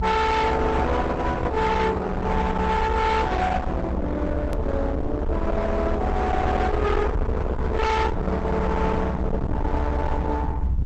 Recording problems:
codec artefacts; Opus, log-spectral distance 2 dB, nothing above 8 kHz
distortion; hard clipping, uneven, signal-to-distortion ratio 6 dB
rumble; below 400 Hz, SNR 3 dB
edit click; at 4.5 s

